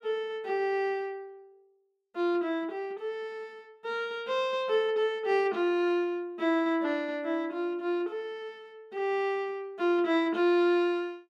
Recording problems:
none

